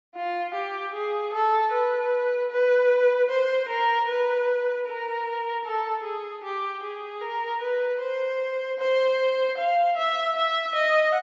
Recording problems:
low-pass filter; nothing above 8 kHz

